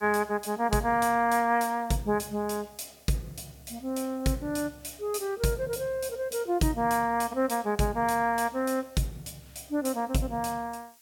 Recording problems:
background hiss; slope +2 dB per octave, SNR 27 dB

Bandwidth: 17 kHz